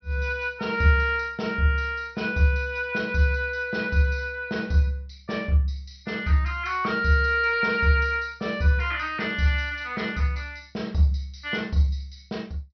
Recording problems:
treble missing; nothing above 5.9 kHz

